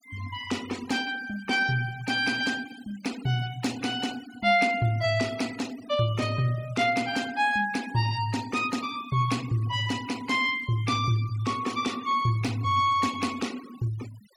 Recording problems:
denoising artefacts; signal-to-artefact ratio 17 dB

